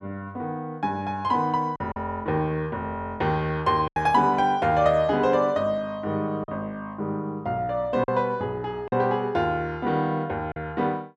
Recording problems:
packet loss; 3% of the sound replaced, filled with silence

